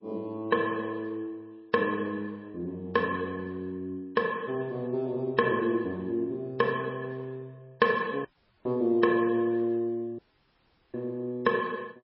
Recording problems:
codec artefacts; MP3, log-spectral distance 2 dB, nothing above 5.3 kHz
dropout; at 8.5 s and at 10 s for 1 s

